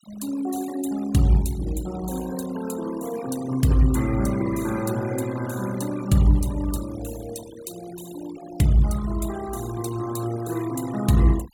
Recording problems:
noise reduction artefacts; signal-to-artefact ratio 16 dB

